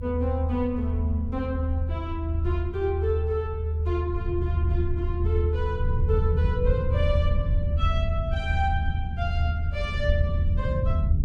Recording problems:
rumble; below 82 Hz, strongest tone 78 Hz, SNR -4 dB

